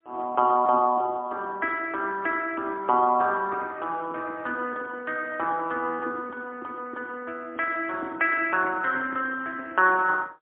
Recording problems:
phone line; 220 Hz to 3.3 kHz, AMR-NB, then MP3

